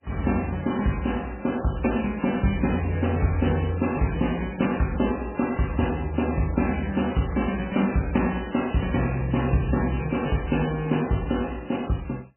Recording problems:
lossy compression; MP3, log-spectral distance 7 dB, nothing above 3 kHz

